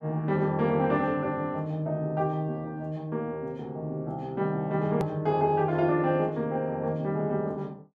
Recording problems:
edit click; at 5 s

